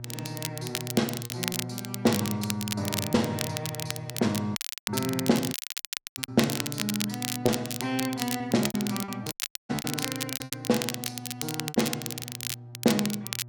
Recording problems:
hum; 60 Hz, harmonics up to 600 Hz, SNR 13 dB
crackling; vinyl, SNR 3 dB
lost packets; 7% of the sound replaced, filled with repeated pitch periods
audio cutting out; at 4.5 s, at 5.5 s for 0.5 s and at 9.5 s

